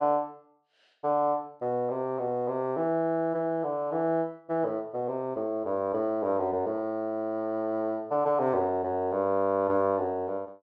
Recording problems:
none

